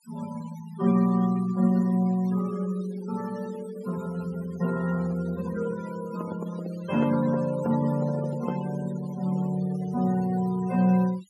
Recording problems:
noise reduction artefacts; signal-to-artefact ratio 18 dB
microphone handling noise; from 6 to 8.5 s; peak -3 dB vs average level

